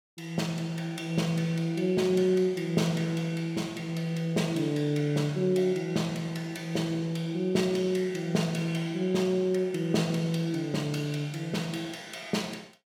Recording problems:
none

